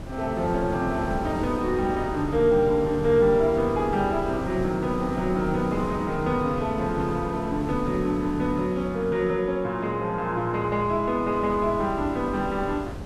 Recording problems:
wind noise; below 350 Hz, SNR 11 dB

